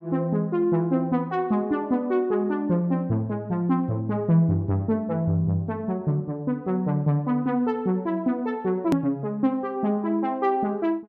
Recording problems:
hard cut with a click; at 9 s

